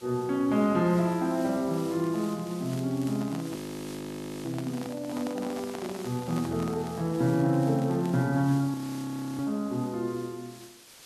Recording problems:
background hiss; slope 0 dB per octave, SNR 19 dB
crackle; from 1.5 to 5 s and from 5.5 to 8 s; loose cable, SNR 25 dB
handling noise; from 3 to 7 s; peak -6 dB vs average level
frozen audio; at 3.5 s for 1 s and at 8.5 s for 0.5 s

